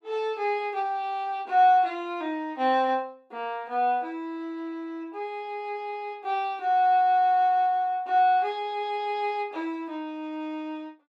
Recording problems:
none

